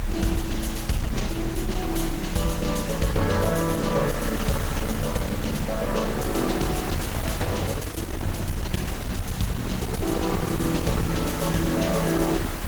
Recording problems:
lossy codec; Opus, log-spectral distance 3 dB, nothing above 19 kHz
distortion; hard clipping, signal-to-distortion ratio 11 dB
hiss; slope -4 dB per octave, SNR 9 dB
rumble; below 290 Hz, strongest tone 32 Hz, SNR 8 dB

